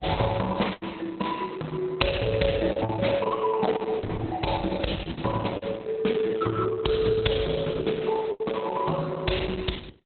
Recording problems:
lossy compression; Opus, log-spectral distance 5 dB, nothing above 4.1 kHz
lost packets; 3% of the sound replaced, filled with the last packet

